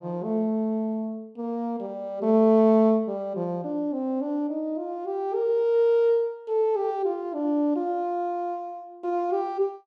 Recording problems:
none

